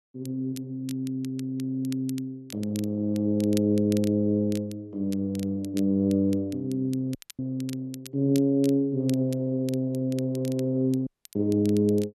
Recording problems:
crackle; vinyl, SNR 20 dB
audio cutting out; at 7 s and at 11 s

